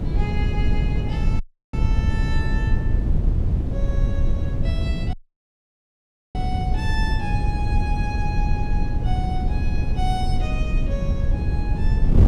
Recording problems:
hum; 60 Hz, harmonics up to 1.1 kHz, SNR 9 dB
wind noise; below 100 Hz, SNR -10 dB
audio cutting out; at 1.5 s and at 5 s for 1 s

